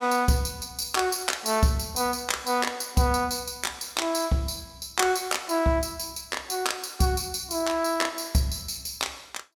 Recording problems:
none

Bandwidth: 18 kHz